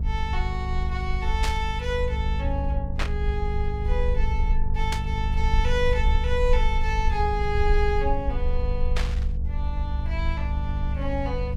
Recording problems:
hum; 50 Hz, harmonics up to 500 Hz, SNR 5 dB
low-frequency rumble; below 66 Hz, SNR -2 dB
static burst; 4 times, first at 1.5 s; peak +4 dB vs average level

